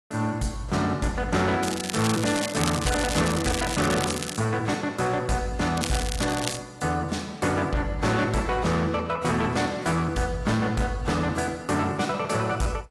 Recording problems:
codec artefacts; AAC, log-spectral distance 5 dB, nothing above 11 kHz
distortion; hard clipping, signal-to-distortion ratio 11 dB
crackling; from 1.5 to 4.5 s and at 6 s; loose cable, SNR 5 dB

